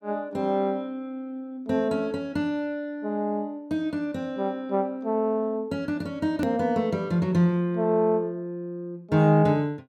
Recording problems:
click at an edit; at 6.5 s

